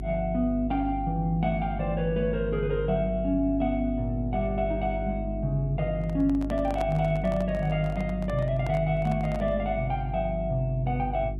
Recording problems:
electrical hum; 50 Hz, harmonics up to 400 Hz, SNR 7 dB
handling noise; from 6 to 9.5 s; peak -5 dB vs average level

